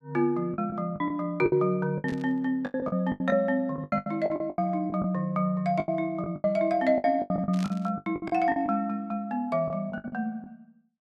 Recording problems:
lost packets; 16% of the sound replaced, filled with the last packet
static burst; at 2 s and at 7.5 s; peak -10 dB vs average level

